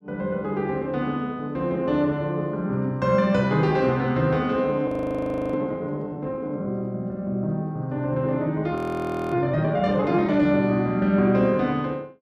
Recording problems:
audio freezing; at 5 s for 0.5 s and at 9 s for 0.5 s

